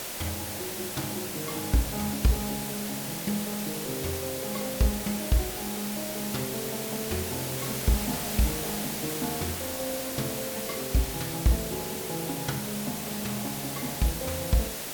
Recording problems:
hiss; slope -2 dB per octave, SNR 1 dB

